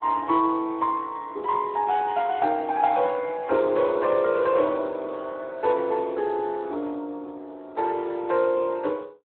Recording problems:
phone line; 260 Hz to 3.5 kHz, Speex

